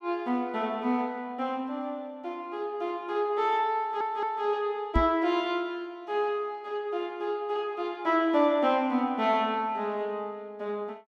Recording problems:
stutter; at 4 s
knock on the microphone; at 5 s; peak +6 dB vs average level

